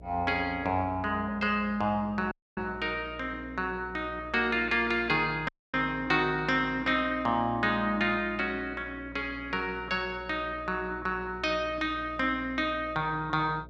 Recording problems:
hum; 60 Hz, harmonics up to 660 Hz, SNR 19 dB
audio cutting out; at 2.5 s and at 5.5 s

